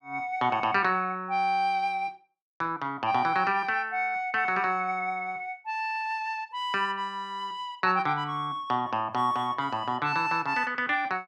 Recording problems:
none

